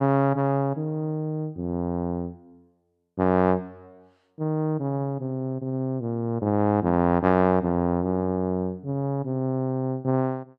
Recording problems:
none

